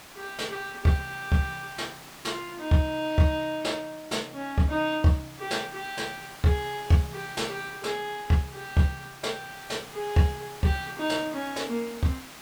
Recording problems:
background hiss; slope -2 dB per octave, SNR 16 dB

